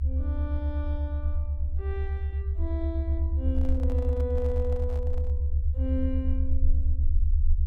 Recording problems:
low-frequency rumble; below 76 Hz, SNR -8 dB
microphone handling noise; from 3.5 to 5.5 s; peak -8 dB vs average level

